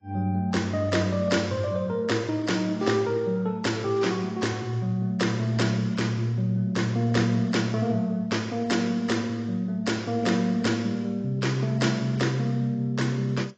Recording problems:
lossy compression; AAC, log-spectral distance 3 dB, nothing above 7.3 kHz

